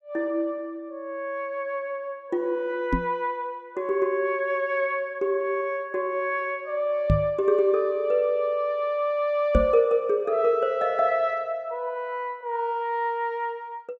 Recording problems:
microphone thump; at 3 s, at 7 s and at 9.5 s; peak +7 dB vs average level

